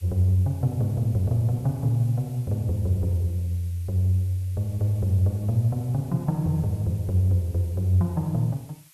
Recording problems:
background hiss; SNR 27 dB

